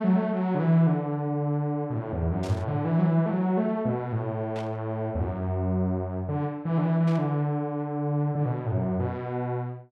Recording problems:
static burst; at 2.5 s, at 4.5 s and at 7 s; peak -12 dB vs average level

